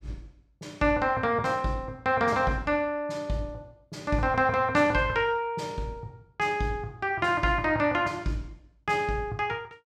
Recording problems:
none

